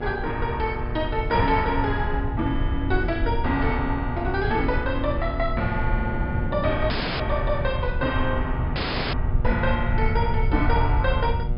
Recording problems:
low-pass filter; nothing above 5.5 kHz
hum; 60 Hz, harmonics up to 1.6 kHz, SNR 12 dB
rumble; below 92 Hz, SNR 3 dB
wind on the microphone; below 240 Hz, SNR 14 dB
audio cutting out; at 7 s and at 9 s

